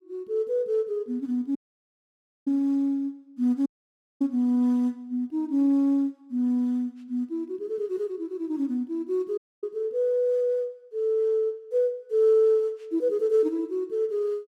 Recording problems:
audio cutting out; at 1.5 s for 1 s, at 3.5 s for 0.5 s and at 9.5 s

